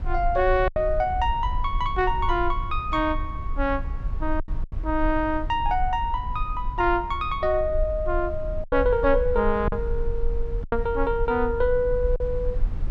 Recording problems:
low-frequency rumble; below 52 Hz, strongest tone 20 Hz, SNR 7 dB
packet loss; 3% of the sound replaced, filled with silence

